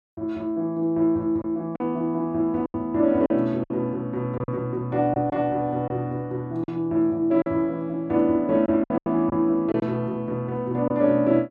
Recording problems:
lost packets; 6% of the sound replaced, filled with silence

